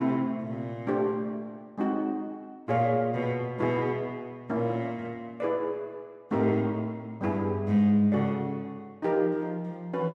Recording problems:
none

